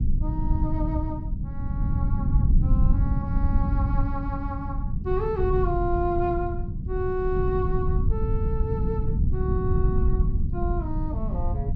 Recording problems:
low-frequency rumble; below 110 Hz, SNR -4 dB

